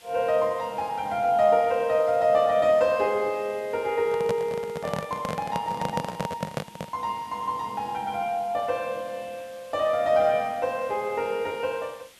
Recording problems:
background hiss; SNR 25 dB
handling noise; from 4 to 7 s; peak 0 dB vs average level

